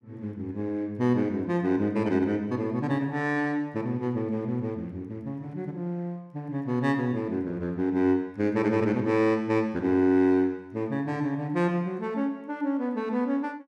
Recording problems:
none

